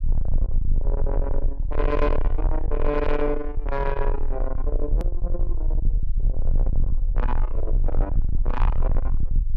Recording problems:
distorted audio; soft clipping, signal-to-distortion ratio 7 dB
low-frequency rumble; below 40 Hz, strongest tone 20 Hz, SNR -2 dB
click at an edit; at 5 s

